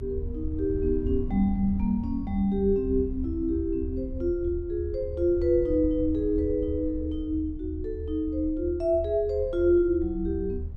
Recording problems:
low-frequency rumble; below 78 Hz, SNR 9 dB

